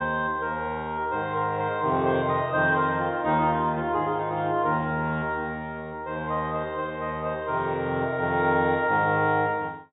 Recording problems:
treble cut off; nothing above 4 kHz

